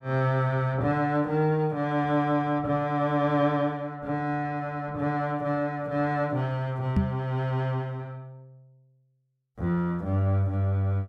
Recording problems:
microphone bump; at 7 s; peak +6 dB vs average level

